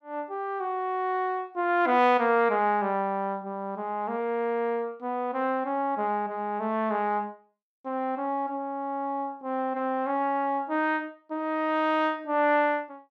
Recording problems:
none

